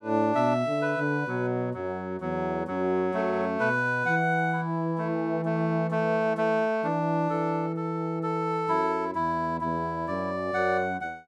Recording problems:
none

